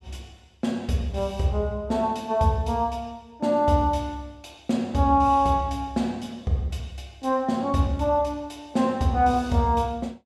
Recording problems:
none

